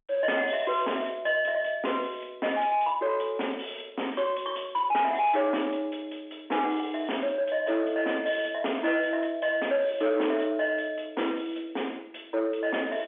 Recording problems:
phone line; 280 Hz to 3.5 kHz, G.711
distorted audio; soft clipping, signal-to-distortion ratio 11 dB

